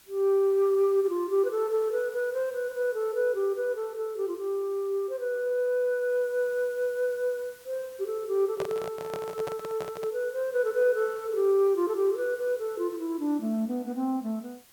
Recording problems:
hiss; slope 0 dB per octave, SNR 24 dB
microphone handling noise; from 8.5 to 10 s; peak -3 dB vs average level

